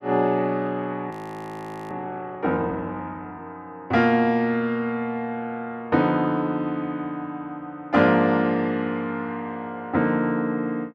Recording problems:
frozen audio; at 1 s for 1 s

